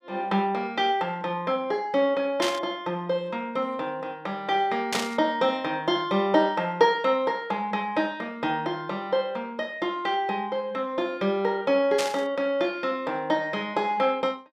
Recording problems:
burst of static; at 2.5 s, at 5 s and at 12 s; peak +2 dB vs average level

